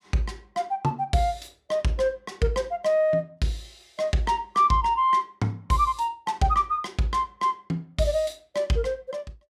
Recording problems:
none

